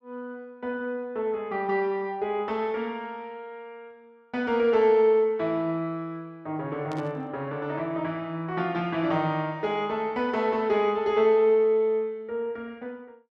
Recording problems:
burst of static; at 7 s; peak -14 dB vs average level

